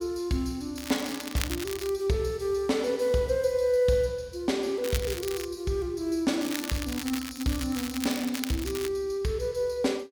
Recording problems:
crackling; from 1 to 2 s, at 5 s and from 6.5 to 9 s; loose cable, SNR 8 dB

